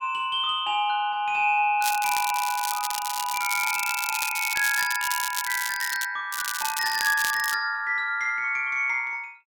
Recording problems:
crackling; from 2 to 6 s and from 6.5 to 7.5 s; loose cable, SNR 5 dB

